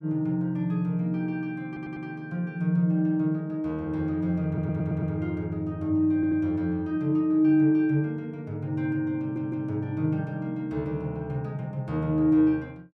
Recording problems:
audio stuttering; 4 times, first at 1.5 s

